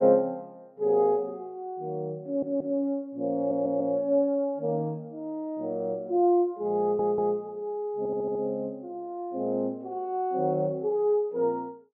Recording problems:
audio stuttering; 4 times, first at 2.5 s

